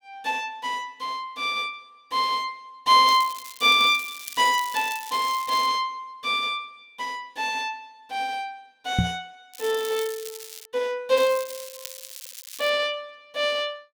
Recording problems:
crackle; from 3 to 5.5 s, from 9.5 to 11 s and from 11 to 13 s; loose cable, SNR 14 dB
knock on the microphone; at 9 s; peak +5 dB vs average level

